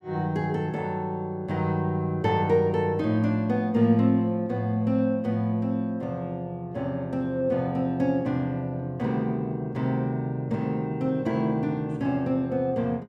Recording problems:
none

